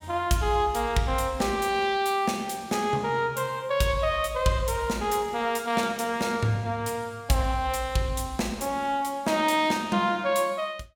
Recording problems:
none

